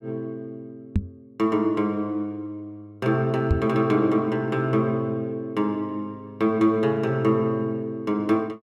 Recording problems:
microphone bump; at 1 s and at 3.5 s; peak +6 dB vs average level

